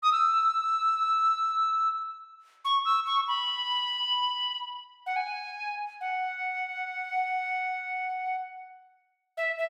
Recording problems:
none

